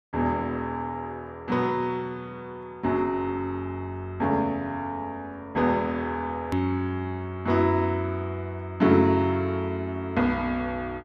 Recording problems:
hard cut with a click; at 6.5 s

